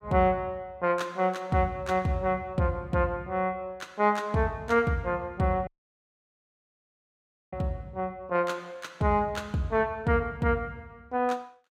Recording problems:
dropout; at 5.5 s for 2 s

